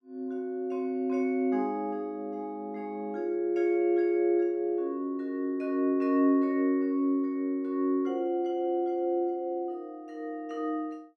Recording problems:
none

